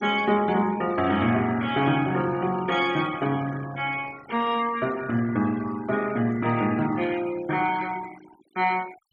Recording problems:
denoising artefacts; signal-to-artefact ratio 18 dB

